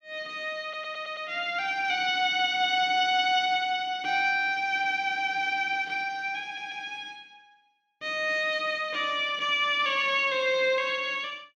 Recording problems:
stutter; at 0.5 s and at 6.5 s

